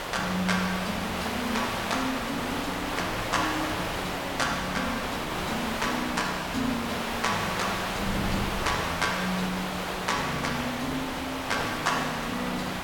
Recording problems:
background hiss; SNR 1 dB
wind on the microphone; below 300 Hz, SNR 12 dB

